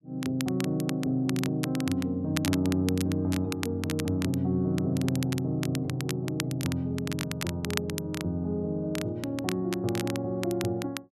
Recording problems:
crackling; vinyl, SNR 10 dB

